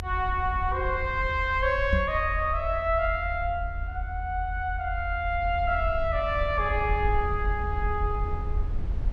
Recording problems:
rumble; below 78 Hz, SNR 5 dB
microphone bump; at 2 s; peak +5 dB vs average level

